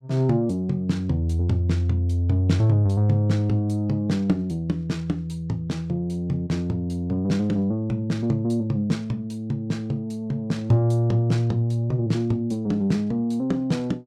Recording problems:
none

